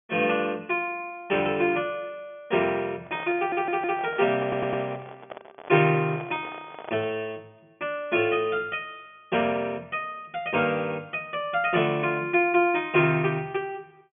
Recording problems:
treble cut off; nothing above 3.4 kHz
handling noise; from 3 to 7 s; peak -8 dB vs average level
audio stuttering; at 3.5 s and at 4.5 s

